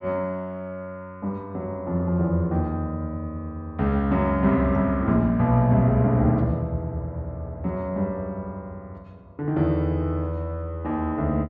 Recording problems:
none

